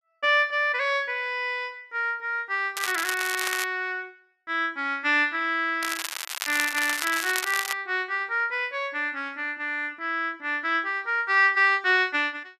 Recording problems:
crackling; at 3 s and from 6 to 7.5 s; loose cable, SNR 6 dB

